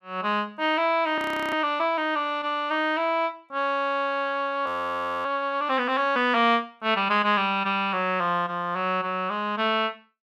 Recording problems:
frozen audio; at 1 s and at 4.5 s for 0.5 s

